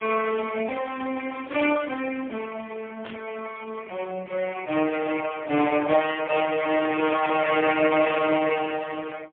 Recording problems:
phone line; 260 Hz to 3.3 kHz, AMR-NB, then MP3
static burst; at 1.5 s and at 3 s; peak -8 dB vs average level

